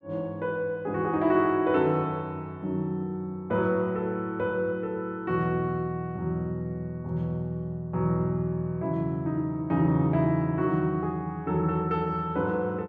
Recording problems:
none

